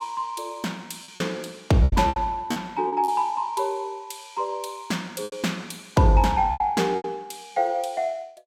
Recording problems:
packet loss; 7% of the sound replaced, filled with repeated pitch periods

